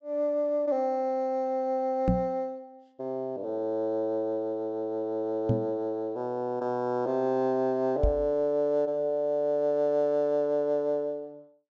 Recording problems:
treble missing; nothing above 8 kHz
microphone bump; at 2 s, at 5.5 s and at 8 s; peak +7 dB vs average level

